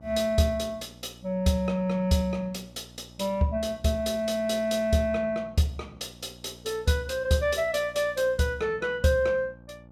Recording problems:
mains hum; 60 Hz, harmonics up to 1.2 kHz, SNR 23 dB

